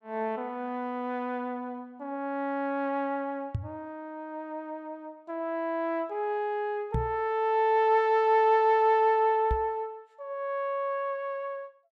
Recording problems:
microphone bump; at 3.5 s, at 7 s and at 9.5 s; peak +1 dB vs average level

